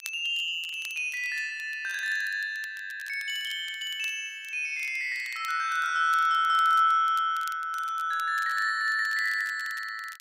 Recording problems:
crackling; vinyl, SNR 22 dB

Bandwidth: 15.5 kHz